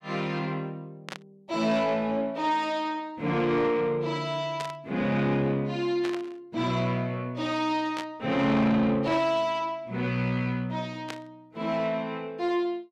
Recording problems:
distortion; soft clipping, signal-to-distortion ratio 12 dB
burst of static; 5 times, first at 1 s; peak -5 dB vs average level

